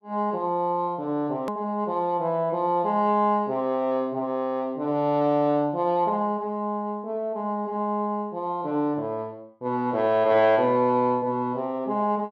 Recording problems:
click at an edit; at 1.5 s

